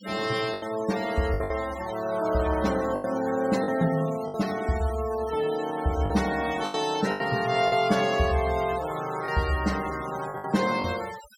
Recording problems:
denoising artefacts; signal-to-artefact ratio 14 dB
packet loss; 7% of the sound replaced, filled with the last packet

